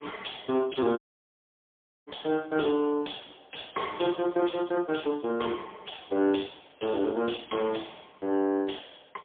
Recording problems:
phone line; 190 Hz to 3.4 kHz, AMR-NB, then MP3
audio cutting out; at 1 s for 1 s

